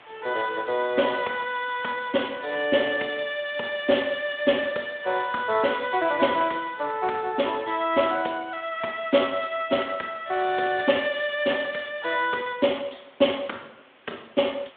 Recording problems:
phone line; 280 Hz to 3.5 kHz, Speex
hiss; SNR 26 dB

